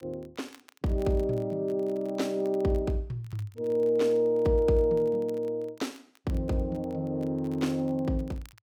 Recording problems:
crackling; vinyl, SNR 30 dB

